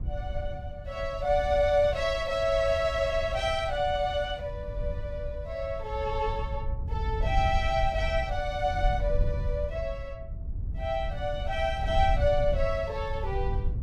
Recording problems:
wind noise; below 82 Hz, SNR 6 dB

